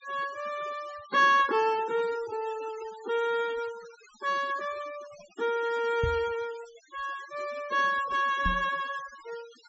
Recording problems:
low-pass filter; nothing above 7.7 kHz
noise reduction artefacts; signal-to-artefact ratio 18 dB
knock on the microphone; at 6 s and at 8.5 s; peak +1 dB vs average level

